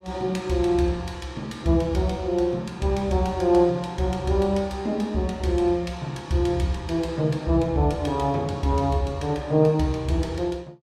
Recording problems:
none

